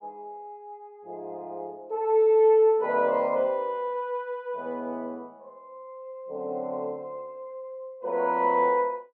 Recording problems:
none

